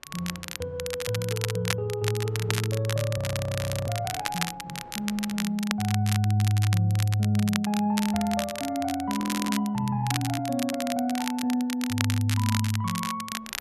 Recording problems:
wind on the microphone; below 930 Hz, SNR 28 dB
crackle; vinyl, SNR 7 dB
audio freezing; at 3 s for 0.5 s and at 9 s

